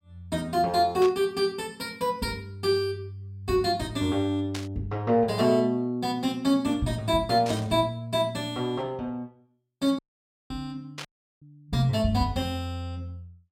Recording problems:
burst of static; 4 times, first at 1 s; peak -5 dB vs average level
audio cutting out; at 10 s for 0.5 s and at 11 s

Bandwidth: 16.5 kHz